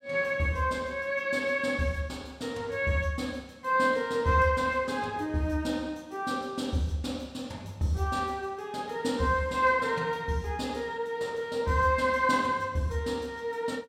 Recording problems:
none

